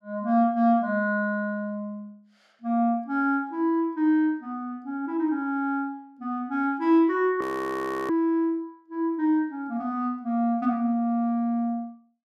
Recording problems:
frozen audio; at 7.5 s for 0.5 s

